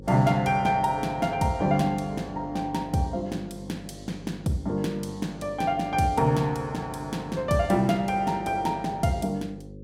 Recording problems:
electrical hum; 50 Hz, harmonics up to 550 Hz, SNR 17 dB

